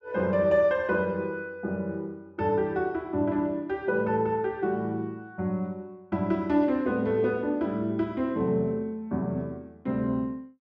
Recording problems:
none

